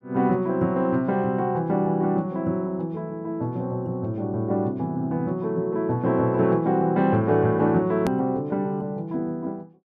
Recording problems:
edit click; at 8 s

